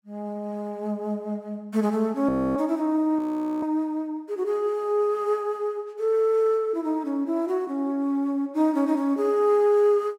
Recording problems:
audio freezing; at 2.5 s and at 3 s

